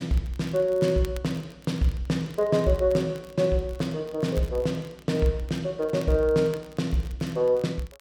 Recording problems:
crackle; vinyl, SNR 25 dB

